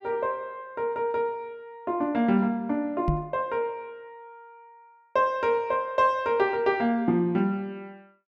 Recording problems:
microphone thump; at 3 s; peak +4 dB vs average level

